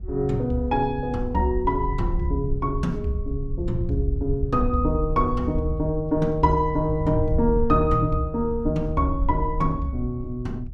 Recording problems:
wind on the microphone; below 76 Hz, SNR 6 dB

